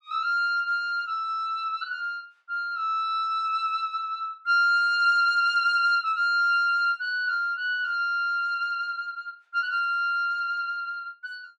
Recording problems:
none

